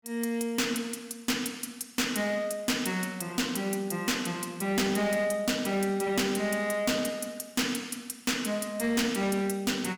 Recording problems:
distortion; hard clipping, uneven, signal-to-distortion ratio 8 dB

